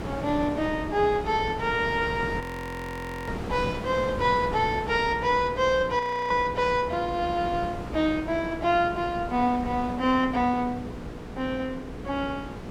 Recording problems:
electrical hum; 60 Hz, harmonics up to 480 Hz, SNR 16 dB
wind on the microphone; below 660 Hz, SNR 11 dB
audio freezing; at 2.5 s for 1 s and at 6 s

